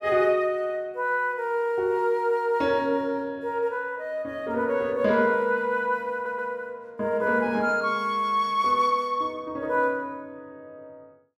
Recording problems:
stutter; at 6 s

